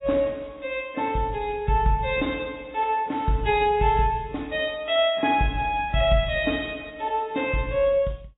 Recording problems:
lossy compression; AAC, log-spectral distance 3 dB, nothing above 3.1 kHz

